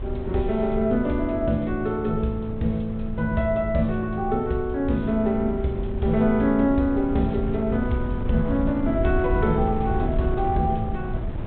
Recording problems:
low-pass filter; nothing above 4 kHz
wind noise; below 130 Hz, SNR 7 dB

